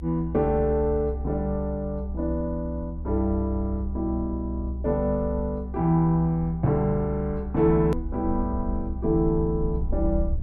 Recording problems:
rumble; below 66 Hz, strongest tone 64 Hz, SNR 7 dB
hard cut with a click; at 8 s

